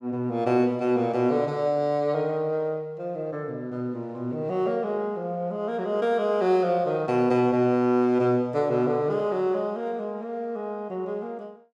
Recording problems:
none

